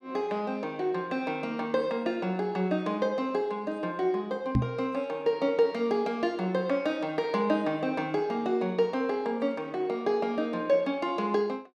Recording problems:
microphone thump; at 4.5 s; peak +7 dB vs average level

